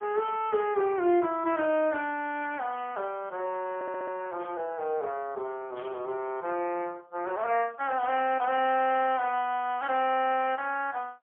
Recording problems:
telephone audio; 320 Hz to 3.2 kHz, AMR-NB, then MP3
audio stuttering; at 4 s
static burst; 4 times, first at 4.5 s; peak -15 dB vs average level

